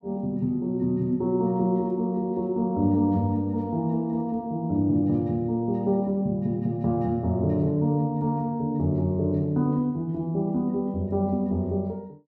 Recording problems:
none

